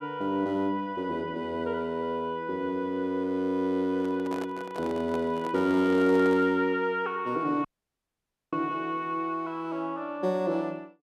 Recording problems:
microphone handling noise; from 4 to 6.5 s; peak -6 dB vs average level
audio cutting out; at 7.5 s for 1 s

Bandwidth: 14 kHz